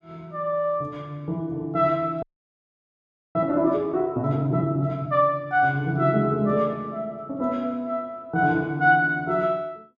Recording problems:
frozen audio; at 2 s for 1 s

